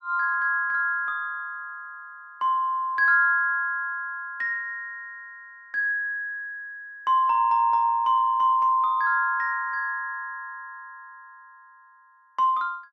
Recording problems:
none

